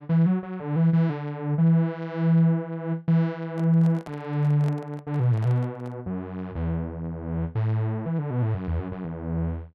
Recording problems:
microphone handling noise; from 3.5 to 6 s; peak -12 dB vs average level

